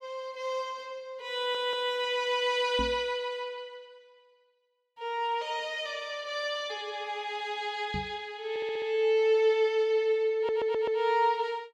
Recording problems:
stutter; at 1.5 s, at 8.5 s and at 10 s
microphone thump; at 3 s and at 8 s; peak -3 dB vs average level

